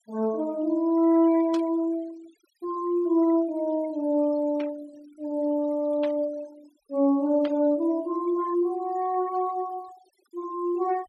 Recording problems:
denoising artefacts; signal-to-artefact ratio 25 dB
static burst; 4 times, first at 1.5 s; peak -10 dB vs average level

